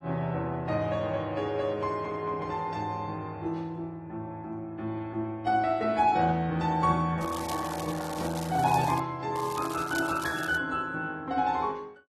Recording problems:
codec artefacts; AAC, then AAC, log-spectral distance 3 dB, nothing above 13.1 kHz
crackling; from 7 to 9 s and from 9.5 to 11 s; loose cable, SNR 13 dB

